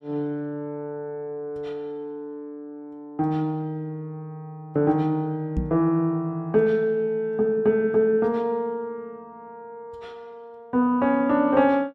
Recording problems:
microphone bump; at 5.5 s; peak +1 dB vs average level

